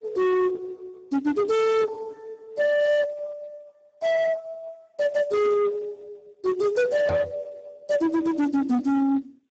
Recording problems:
lossy codec; Opus, then Speex, log-spectral distance 2 dB
distortion; soft clipping, signal-to-distortion ratio 6 dB
microphone thump; at 7 s; peak +1 dB vs average level

